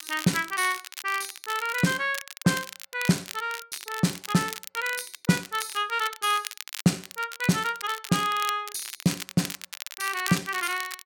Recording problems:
crackle; vinyl, SNR 10 dB

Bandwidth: 17 kHz